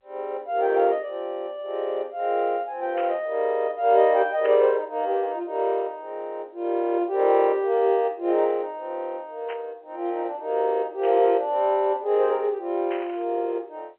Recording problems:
telephone audio; 300 Hz to 3.4 kHz, G.711
static burst; 5 times, first at 3 s; peak -9 dB vs average level

